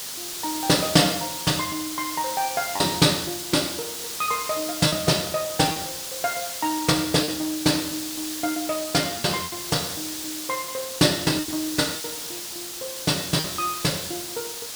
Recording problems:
hiss; SNR 6 dB
packet loss; 5% of the sound replaced, filled with repeated pitch periods

